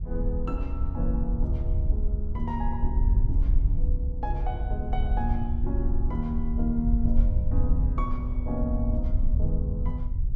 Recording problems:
wind noise; below 64 Hz, SNR -5 dB

